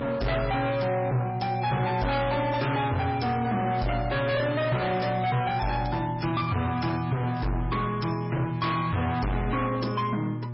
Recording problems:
codec artefacts; MP3, log-spectral distance 4 dB, nothing above 5.5 kHz
distorted audio; hard clipping, signal-to-distortion ratio 6 dB
hum; 60 Hz, harmonics up to 840 Hz, SNR 7 dB
crackling; from 3.5 to 7.5 s; loose cable, SNR 24 dB

